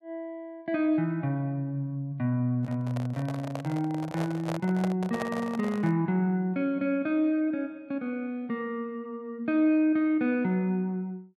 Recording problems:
microphone handling noise; from 2.5 to 6 s; peak -1 dB vs average level

